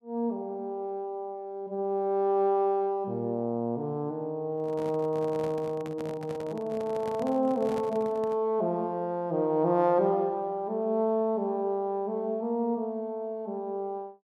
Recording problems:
handling noise; from 4.5 to 8.5 s; peak -5 dB vs average level

